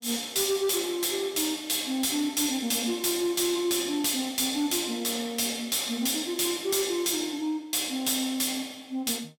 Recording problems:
distortion; hard clipping, signal-to-distortion ratio 11 dB

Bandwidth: 18 kHz